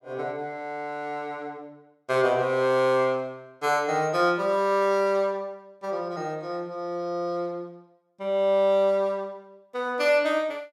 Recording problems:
none

